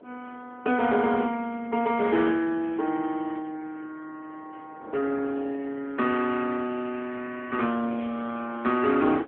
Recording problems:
telephone audio; 240 Hz to 3.4 kHz, AMR-NB
wind noise; below 570 Hz, SNR 22 dB

